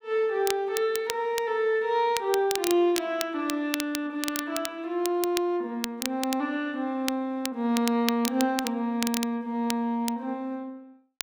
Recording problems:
crackling; vinyl, SNR 8 dB

